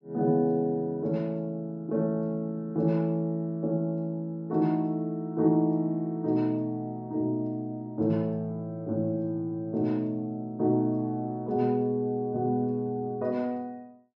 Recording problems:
low-pass filter; nothing above 8 kHz

